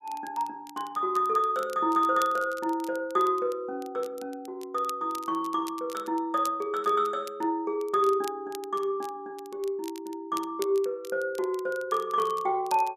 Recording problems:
crackling; vinyl, SNR 20 dB

